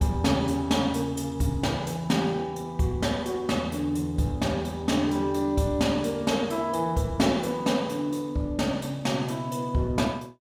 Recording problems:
none

